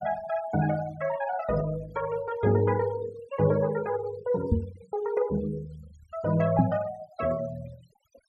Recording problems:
denoising artefacts; signal-to-artefact ratio 18 dB
microphone bump; at 4.5 s and at 6.5 s; peak +9 dB vs average level

